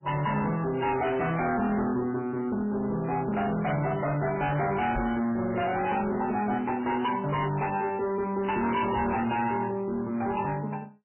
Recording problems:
lossy codec; MP3, log-spectral distance 4 dB, nothing above 2.9 kHz
distorted audio; hard clipping, signal-to-distortion ratio 7 dB
microphone bump; at 5 s and at 9 s; peak 0 dB vs average level

